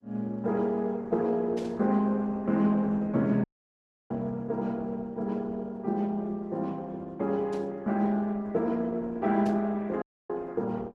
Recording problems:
codec artefacts; Opus, then Opus, log-spectral distance 2 dB
static burst; at 1.5 s, at 7.5 s and at 9.5 s; peak -15 dB vs average level
audio cutting out; at 3.5 s for 0.5 s and at 10 s

